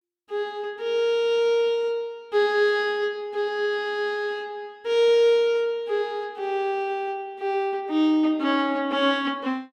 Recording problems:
none

